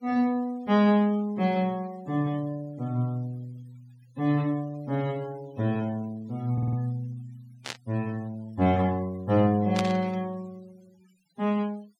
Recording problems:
denoising artefacts; signal-to-artefact ratio 26 dB
audio stuttering; at 6.5 s
static burst; at 7.5 s and at 10 s; peak 0 dB vs average level

